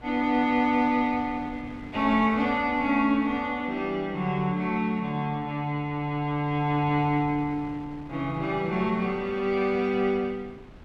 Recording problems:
wind on the microphone; below 520 Hz, SNR 20 dB

